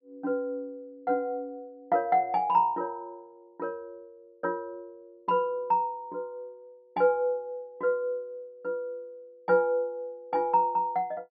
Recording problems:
low-pass filter; nothing above 5.5 kHz

